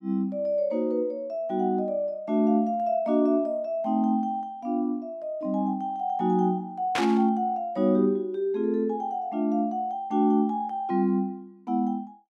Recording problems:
burst of static; at 7 s; peak +1 dB vs average level

